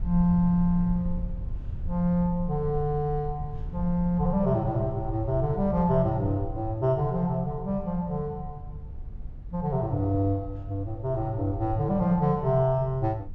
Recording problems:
low-frequency rumble; below 86 Hz, SNR 12 dB

